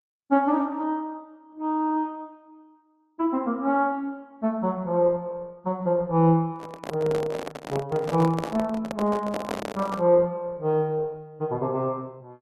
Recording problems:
lossy compression; Opus, log-spectral distance 2 dB
handling noise; from 6.5 to 10 s; peak -1 dB vs average level

